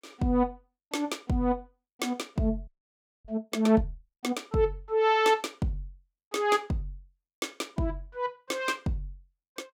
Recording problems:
audio freezing; at 2.5 s for 0.5 s

